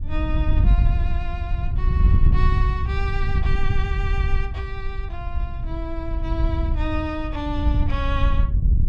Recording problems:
wind on the microphone; below 76 Hz, SNR -7 dB

